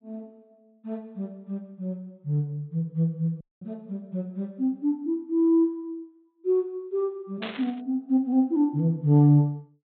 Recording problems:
treble missing; nothing above 4 kHz
audio cutting out; at 3.5 s
static burst; at 7.5 s; peak -5 dB vs average level

